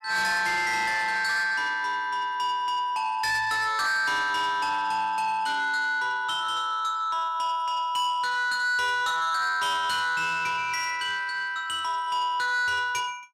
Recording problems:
distorted audio; soft clipping, signal-to-distortion ratio 10 dB

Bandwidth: 14 kHz